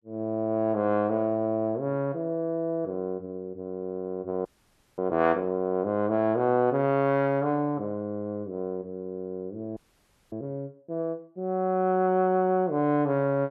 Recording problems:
audio freezing; at 4.5 s for 0.5 s and at 10 s for 0.5 s

